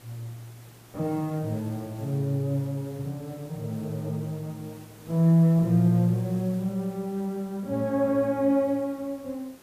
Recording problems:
hiss; slope -4 dB per octave, SNR 24 dB

